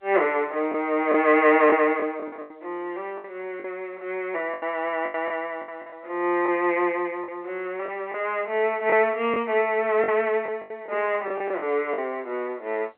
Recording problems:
telephone audio; 320 Hz to 3.5 kHz, G.711
lost packets; 8% of the sound replaced, filled with the last packet

